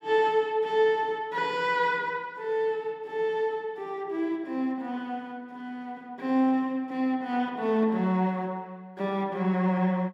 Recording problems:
none

